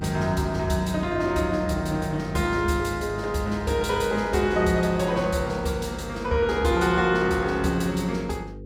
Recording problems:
electrical hum; 50 Hz, harmonics up to 500 Hz, SNR 15 dB

